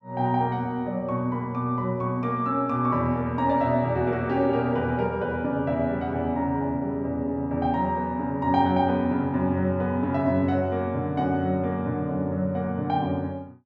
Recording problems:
none

